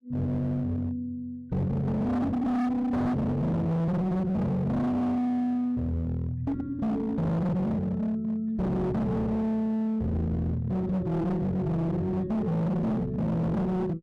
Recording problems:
distortion; hard clipping, signal-to-distortion ratio 7 dB

